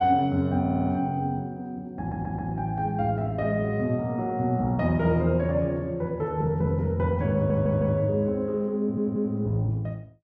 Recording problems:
stutter; 4 times, first at 0.5 s

